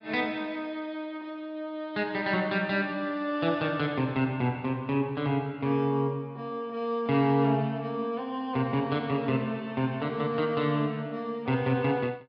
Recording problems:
low-pass filter; nothing above 5.5 kHz

